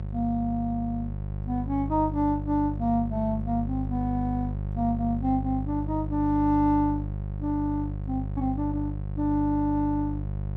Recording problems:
hum; 50 Hz, harmonics up to 700 Hz, SNR 5 dB

